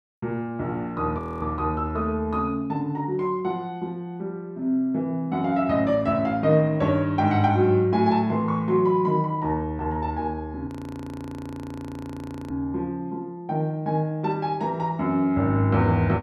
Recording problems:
audio freezing; at 1 s and at 11 s for 2 s

